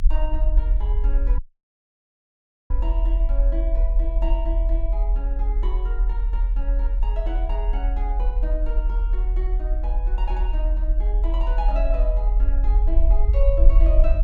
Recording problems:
low-frequency rumble; below 42 Hz, strongest tone 40 Hz, SNR -11 dB
dropout; at 1.5 s for 1.5 s

